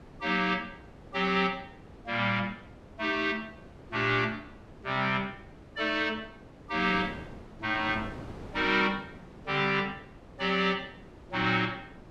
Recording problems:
wind noise; below 560 Hz, SNR 19 dB

